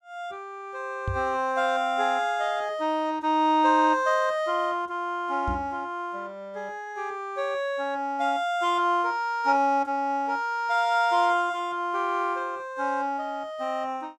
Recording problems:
knock on the microphone; at 1 s and at 5.5 s; peak -1 dB vs average level

